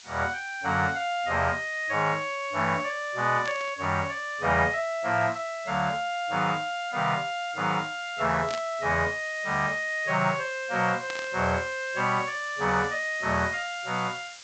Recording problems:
treble missing; nothing above 8 kHz
background hiss; slope +4 dB per octave, SNR 18 dB
static burst; at 3.5 s, at 8.5 s and at 11 s; peak -5 dB vs average level

